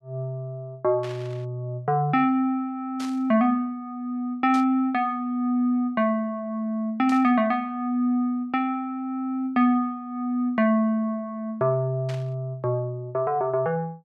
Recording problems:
static burst; 5 times, first at 1 s; peak -10 dB vs average level

